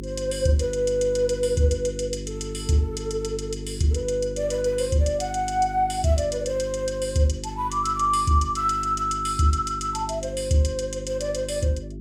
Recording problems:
mains hum; 50 Hz, harmonics up to 400 Hz, SNR 11 dB

